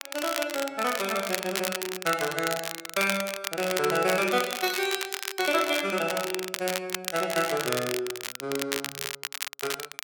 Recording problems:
crackle; vinyl, SNR 4 dB

